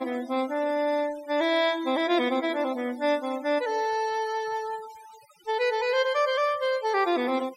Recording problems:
noise reduction artefacts; signal-to-artefact ratio 19 dB

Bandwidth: 16 kHz